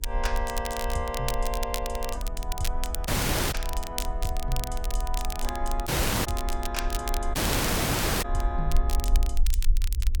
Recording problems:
electrical hum; 50 Hz, harmonics up to 500 Hz, SNR 19 dB
rumble; below 48 Hz, SNR -1 dB
crackle; vinyl, SNR 3 dB
dropout; at 3 s, at 6 s and at 7.5 s for 1 s

